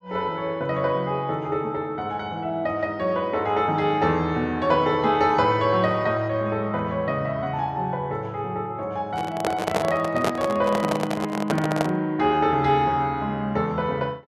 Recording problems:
handling noise; from 9 to 12 s; peak +3 dB vs average level

